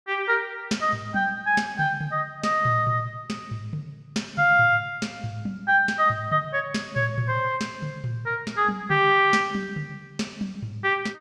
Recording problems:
none

